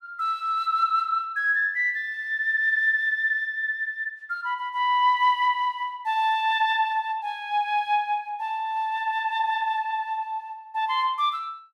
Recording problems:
none

